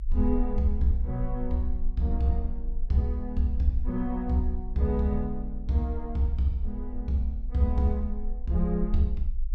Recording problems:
low-frequency rumble; below 50 Hz, strongest tone 18 Hz, SNR 7 dB

